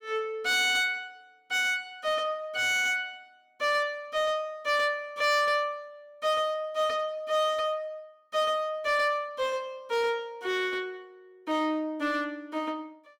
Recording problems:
distortion; hard clipping, uneven, signal-to-distortion ratio 11 dB

